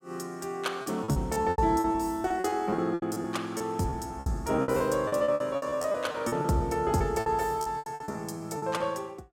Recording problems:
packet loss; 17% of the sound replaced, filled with repeated pitch periods

